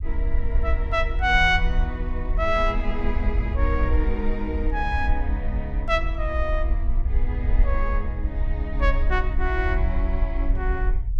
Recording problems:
rumble; below 56 Hz, SNR 0 dB

